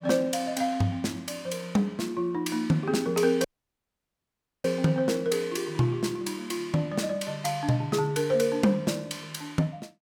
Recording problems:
dropout; at 3.5 s for 1 s

